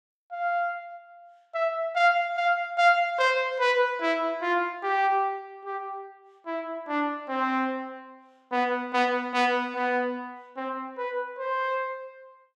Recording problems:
none

